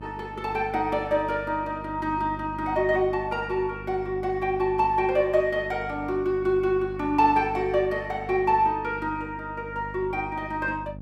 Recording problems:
electrical hum; 50 Hz, harmonics up to 600 Hz, SNR 15 dB

